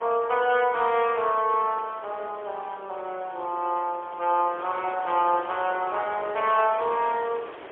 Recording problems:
telephone audio; 260 Hz to 3.4 kHz, AMR-NB, then MP3
background hiss; SNR 17 dB

